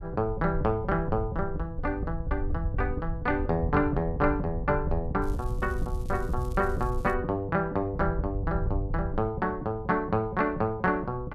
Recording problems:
rumble; below 84 Hz, SNR 6 dB
crackling; from 5 to 7 s; loose cable, SNR 26 dB

